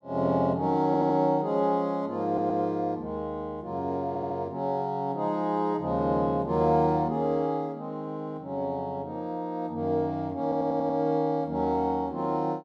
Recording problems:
stutter; 4 times, first at 1 s

